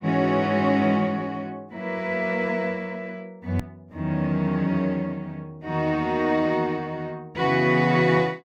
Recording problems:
edit click; at 3.5 s

